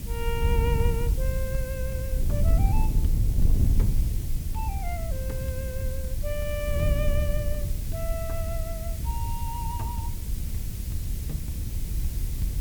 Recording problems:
hiss; slope +2 dB per octave, SNR 6 dB
wind noise; below 86 Hz, SNR -7 dB

